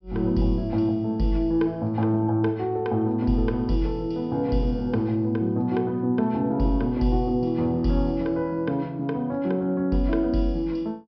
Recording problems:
low-pass filter; nothing above 5.5 kHz

